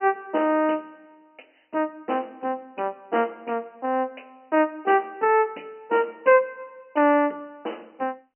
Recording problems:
phone line; 220 Hz to 3.1 kHz, G.711

